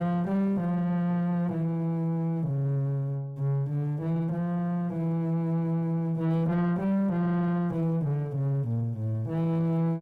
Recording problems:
distortion; soft clipping, signal-to-distortion ratio 9 dB

